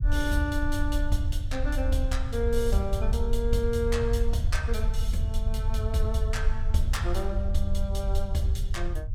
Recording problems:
rumble; below 68 Hz, SNR -2 dB

